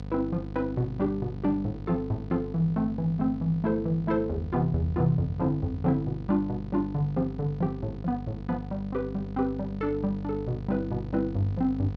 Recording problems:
hum; 50 Hz, harmonics up to 1 kHz, SNR 10 dB

